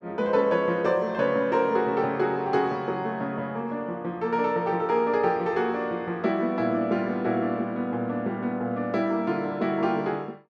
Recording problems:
none

